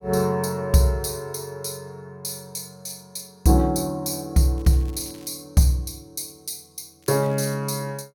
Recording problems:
crackling; at 4.5 s and at 7 s; loose cable, SNR 28 dB

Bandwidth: 17 kHz